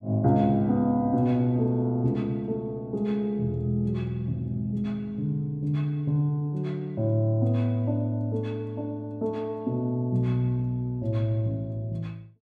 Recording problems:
none

